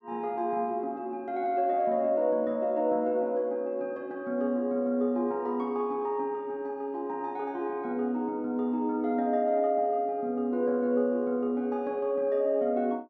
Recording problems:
none

